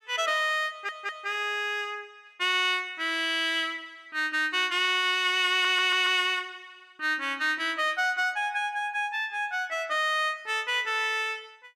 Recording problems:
audio stuttering; at 0.5 s and at 5.5 s

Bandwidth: 14.5 kHz